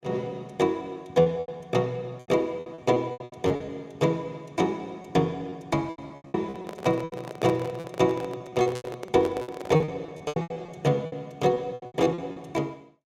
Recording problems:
lost packets; 15% of the sound replaced, filled with repeated pitch periods
handling noise; from 6.5 to 10 s; peak -2 dB vs average level

